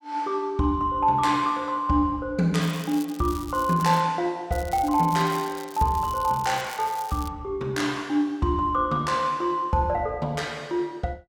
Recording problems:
crackling; from 2.5 to 4 s and from 4.5 to 7.5 s; loose cable, SNR 18 dB

